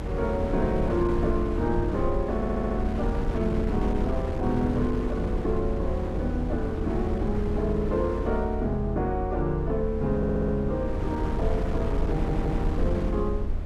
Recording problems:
low-frequency rumble; below 80 Hz, SNR 4 dB
wind on the microphone; below 410 Hz, SNR 5 dB
stutter; at 2.5 s, at 10 s and at 12 s

